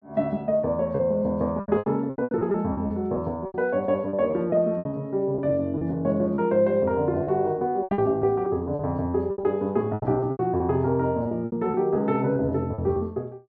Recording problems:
lost packets; 13% of the sound replaced, filled with repeated pitch periods

